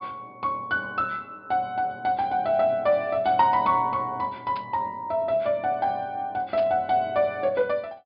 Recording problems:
treble missing; nothing above 5.5 kHz
burst of static; at 4.5 s and at 6.5 s; peak -11 dB vs average level

